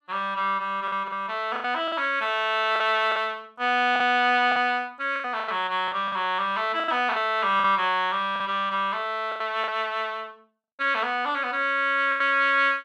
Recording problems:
lost packets; 8% of the sound replaced, filled with the last packet

